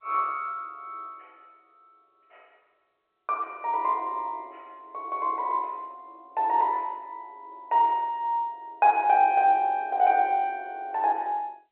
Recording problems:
telephone audio; 340 Hz to 3.2 kHz, G.711

